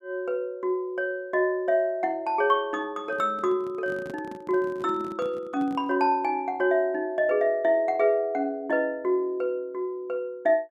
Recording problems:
handling noise; from 3 to 6 s; peak -9 dB vs average level

